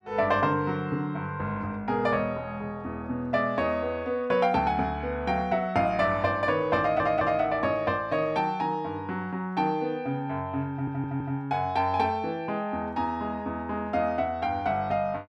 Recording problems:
audio stuttering; at 7 s and at 11 s

